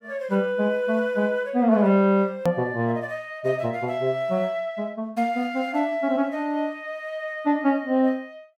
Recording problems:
click at an edit; at 2.5 s

